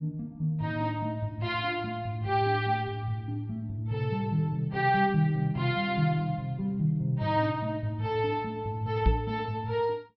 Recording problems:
treble missing; nothing above 5.5 kHz
microphone thump; at 9 s; peak +7 dB vs average level

